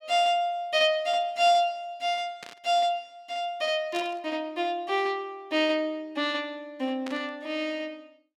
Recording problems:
static burst; at 2.5 s, at 4 s and at 7 s; peak -8 dB vs average level

